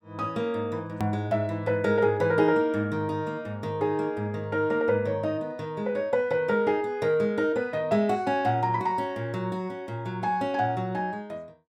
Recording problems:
edit click; at 1 s

